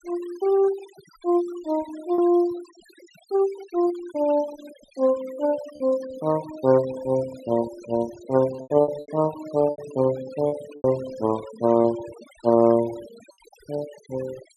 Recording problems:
noise reduction artefacts; signal-to-artefact ratio 20 dB
packet loss; 5% of the sound replaced, filled with repeated pitch periods

